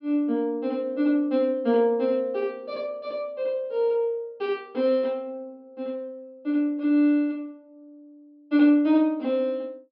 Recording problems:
treble missing; nothing above 5.5 kHz

